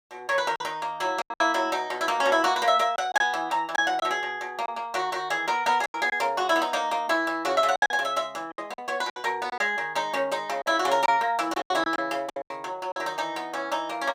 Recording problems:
lost packets; 8% of the sound replaced, filled with silence

